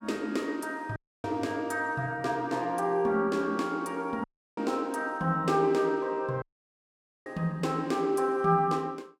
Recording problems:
dropout; at 1 s, at 4 s and at 6.5 s for 1 s

